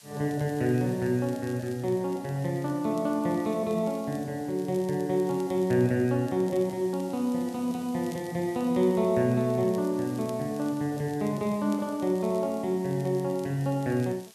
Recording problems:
background hiss; slope +2 dB per octave, SNR 23 dB
crackle; vinyl, SNR 27 dB

